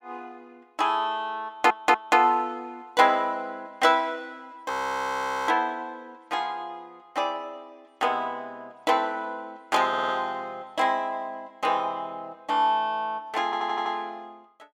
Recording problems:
stutter; at 1.5 s, at 10 s and at 13 s
audio freezing; at 4.5 s for 1 s

